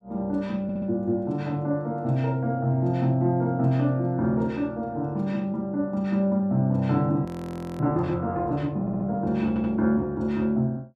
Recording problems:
stutter; at 0.5 s, at 9 s and at 9.5 s
frozen audio; at 7.5 s for 0.5 s

